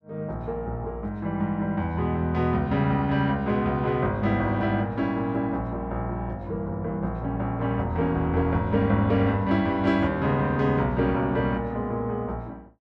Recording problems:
none

